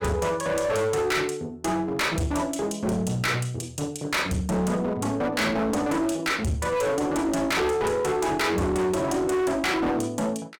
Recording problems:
distorted audio; hard clipping, uneven, signal-to-distortion ratio 7 dB

